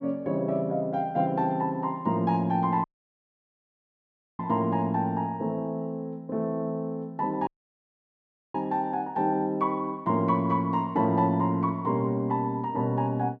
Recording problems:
dropout; at 3 s for 1.5 s and at 7.5 s for 1 s

